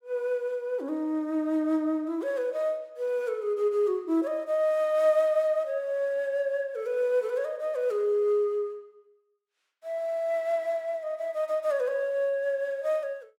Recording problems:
none

